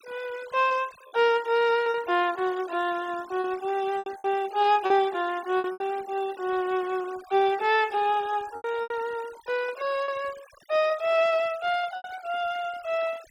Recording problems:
denoising artefacts; signal-to-artefact ratio 21 dB
lost packets; 6% of the sound replaced, filled with repeated pitch periods

